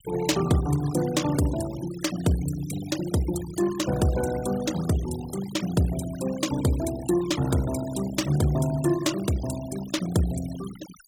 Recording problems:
noise reduction artefacts; signal-to-artefact ratio 14 dB

